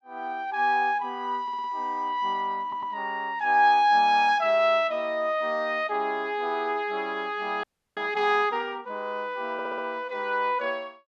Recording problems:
stutter; at 1.5 s, at 2.5 s and at 9.5 s
audio freezing; at 7.5 s

